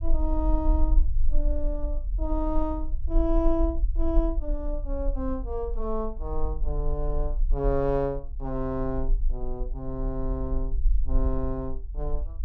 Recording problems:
rumble; below 44 Hz, SNR -1 dB

